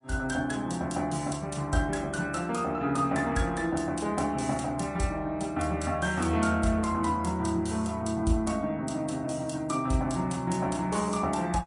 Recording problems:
lossy codec; MP3, then MP3, log-spectral distance 4 dB

